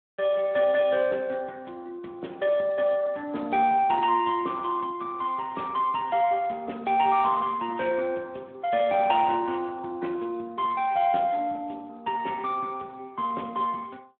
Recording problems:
telephone audio; 220 Hz to 3.5 kHz, Speex

